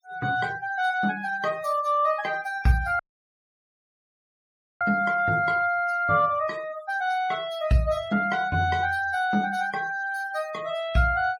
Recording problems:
noise reduction artefacts; signal-to-artefact ratio 21 dB
dropout; at 3 s for 2 s

